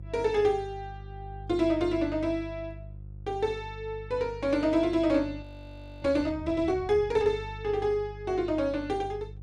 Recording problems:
hum; 50 Hz, harmonics up to 350 Hz, SNR 15 dB
frozen audio; at 5.5 s for 0.5 s

